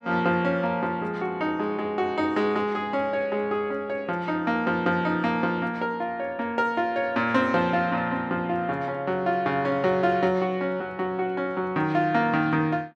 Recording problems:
none

